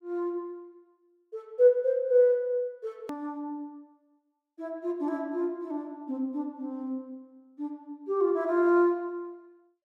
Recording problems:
click at an edit; at 3 s

